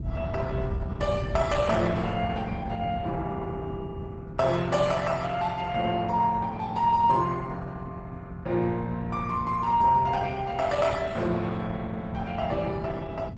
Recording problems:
lossy compression; Opus, log-spectral distance 3 dB, nothing above 7.8 kHz
low-frequency rumble; below 150 Hz, SNR 9 dB

